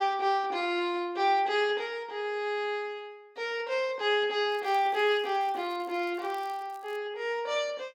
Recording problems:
crackle; from 4.5 to 7 s; loose cable, SNR 29 dB

